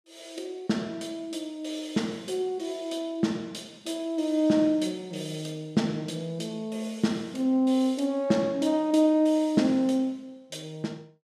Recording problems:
none

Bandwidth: 14.5 kHz